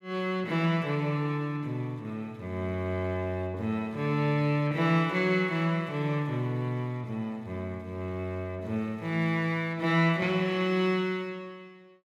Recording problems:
none

